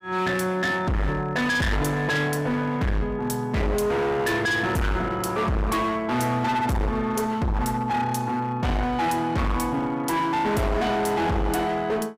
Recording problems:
distorted audio; hard clipping, signal-to-distortion ratio 6 dB

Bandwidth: 15.5 kHz